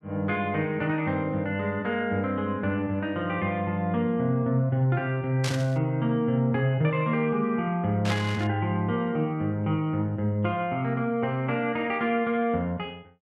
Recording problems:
static burst; at 5.5 s and at 8 s; peak -2 dB vs average level

